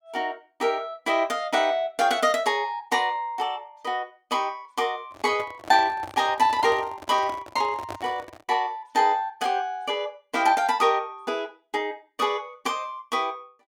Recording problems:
microphone handling noise; from 5 to 8.5 s; peak -7 dB vs average level

